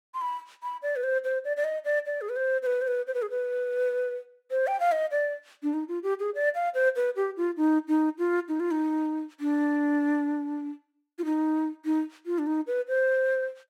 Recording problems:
none

